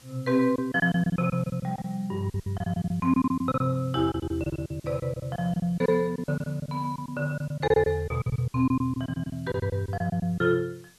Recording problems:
hiss; SNR 27 dB
packet loss; 16% of the sound replaced, filled with silence

